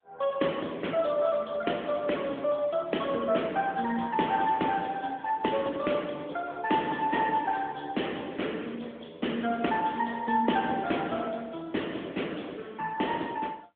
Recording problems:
telephone audio; 220 Hz to 3.5 kHz, AMR-NB

